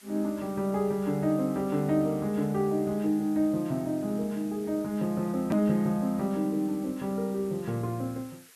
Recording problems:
background hiss; SNR 23 dB
hard cut with a click; at 5.5 s

